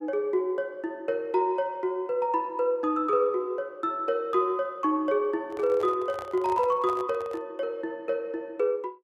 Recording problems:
microphone handling noise; from 5.5 to 7.5 s; peak -9 dB vs average level

